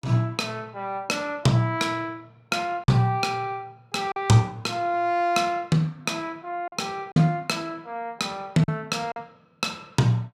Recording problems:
packet loss; 3% of the sound replaced, filled with silence

